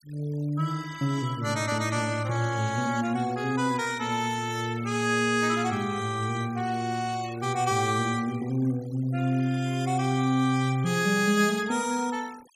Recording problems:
denoising artefacts; signal-to-artefact ratio 19 dB

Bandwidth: 15.5 kHz